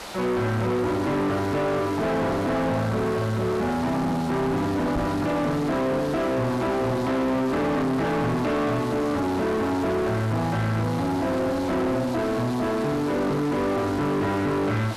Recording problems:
distortion; soft clipping, signal-to-distortion ratio 6 dB
hiss; slope -3 dB per octave, SNR 14 dB
microphone bump; at 5 s; peak -1 dB vs average level

